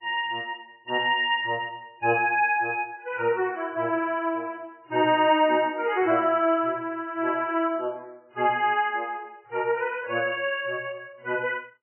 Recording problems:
lossy compression; MP3, log-spectral distance 3 dB, nothing above 2.5 kHz

